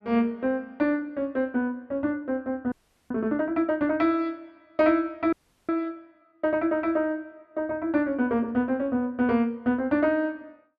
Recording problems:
frozen audio; at 2.5 s and at 5.5 s

